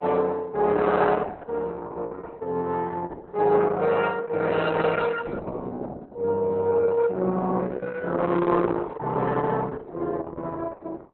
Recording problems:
codec artefacts; Opus, log-spectral distance 3 dB, nothing above 4 kHz

